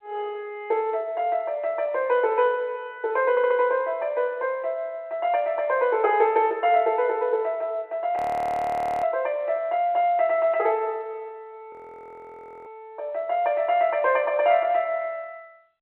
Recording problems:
phone line; 300 Hz to 3.3 kHz, G.711
stutter; at 3.5 s
audio freezing; at 8 s for 1 s and at 12 s for 1 s

